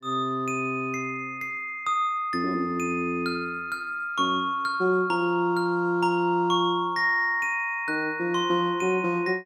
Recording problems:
none

